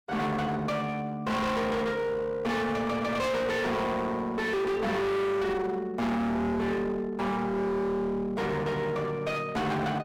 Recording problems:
distorted audio; hard clipping, uneven, signal-to-distortion ratio 5 dB

